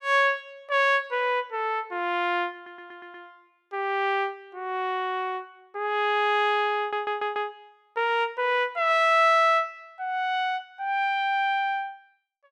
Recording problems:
stutter; at 2.5 s and at 7 s

